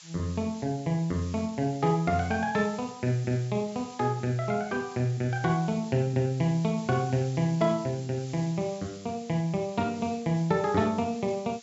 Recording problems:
treble cut off; nothing above 8 kHz
background hiss; slope +5 dB per octave, SNR 20 dB

